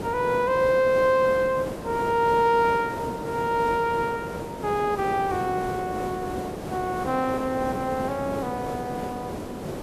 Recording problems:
background hiss; slope -8 dB per octave, SNR 9 dB

